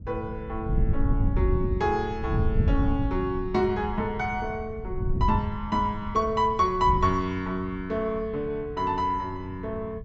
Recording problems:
low-pass filter; nothing above 8 kHz
wind noise; below 110 Hz, SNR 3 dB

